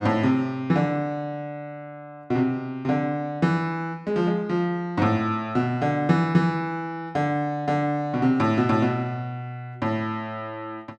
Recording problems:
none

